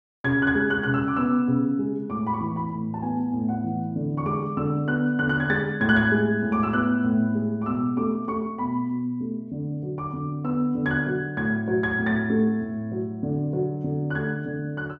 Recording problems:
none

